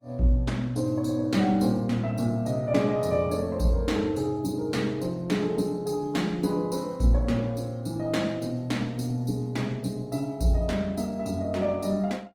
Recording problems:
lossy codec; Opus, log-spectral distance 3 dB, nothing above 19 kHz

